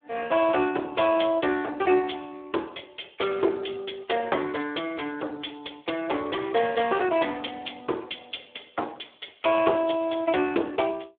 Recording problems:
telephone audio; 280 Hz to 3.5 kHz, Speex

